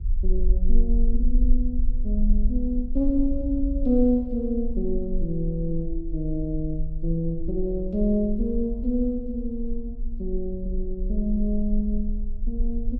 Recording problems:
rumble; below 40 Hz, strongest tone 20 Hz, SNR 3 dB

